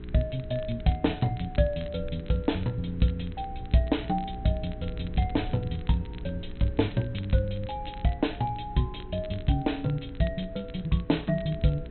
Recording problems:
low-pass filter; nothing above 4.1 kHz
hum; 60 Hz, harmonics up to 420 Hz, SNR 16 dB
background hiss; SNR 29 dB
wind noise; below 96 Hz, SNR 14 dB
crackle; vinyl, SNR 24 dB

